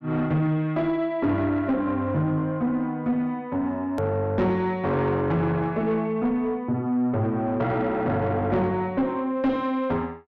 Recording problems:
distorted audio; soft clipping, signal-to-distortion ratio 11 dB
click at an edit; at 4 s

